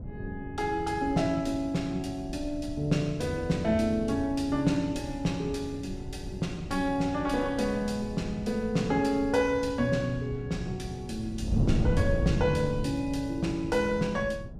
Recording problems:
wind on the microphone; below 160 Hz, SNR 8 dB

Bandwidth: 15.5 kHz